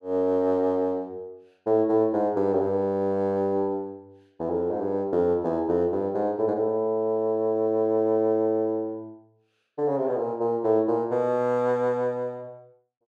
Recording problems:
none

